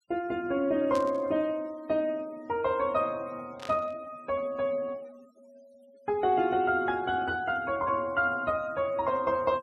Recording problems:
noise reduction artefacts; signal-to-artefact ratio 26 dB
static burst; at 1 s and at 3.5 s; peak -9 dB vs average level

